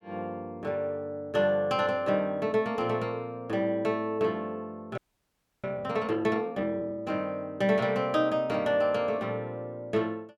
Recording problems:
audio freezing; at 5 s for 0.5 s

